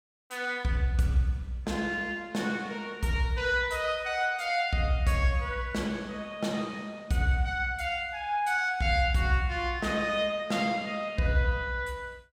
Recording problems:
none

